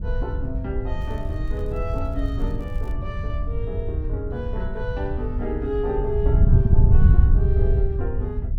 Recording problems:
wind on the microphone; below 90 Hz, SNR -7 dB
crackling; from 1 to 3 s; loose cable, SNR 28 dB

